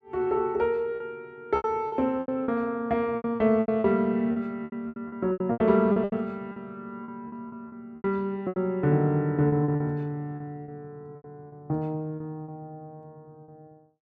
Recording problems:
packet loss; 13% of the sound replaced, filled with repeated pitch periods

